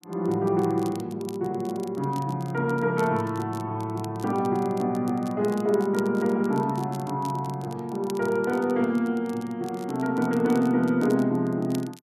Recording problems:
crackle; vinyl, SNR 23 dB

